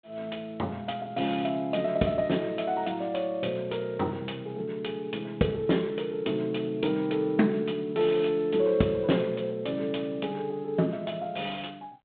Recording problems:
phone line; 130 Hz to 3.6 kHz, G.726

